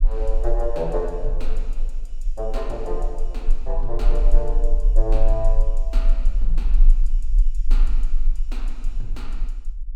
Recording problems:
rumble; below 32 Hz, strongest tone 20 Hz, SNR -6 dB

